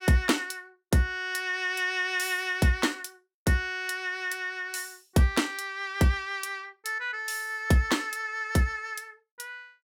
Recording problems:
none

